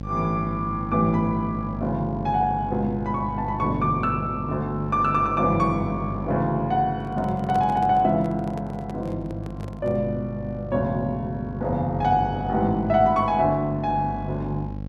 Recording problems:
hum; 50 Hz, harmonics up to 800 Hz, SNR 10 dB
microphone handling noise; from 7 to 10 s; peak -6 dB vs average level

